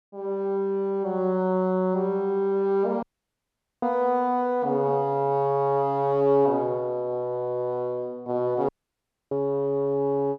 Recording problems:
dropout; at 3 s for 1 s and at 8.5 s for 0.5 s

